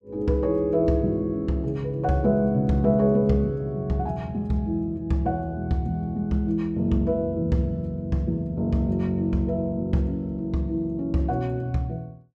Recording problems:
none

